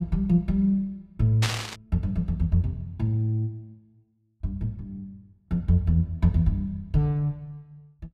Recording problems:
static burst; at 1.5 s; peak +3 dB vs average level

